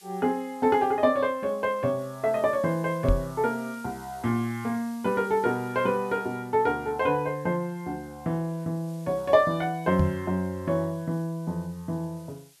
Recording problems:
hiss; slope +2 dB per octave, SNR 26 dB
knock on the microphone; at 3 s and at 10 s; peak +6 dB vs average level

